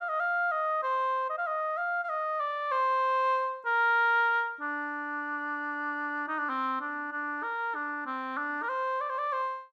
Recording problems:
none

